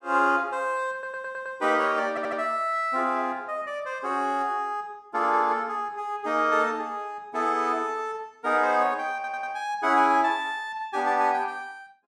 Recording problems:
stutter; at 1 s, at 2 s and at 9 s

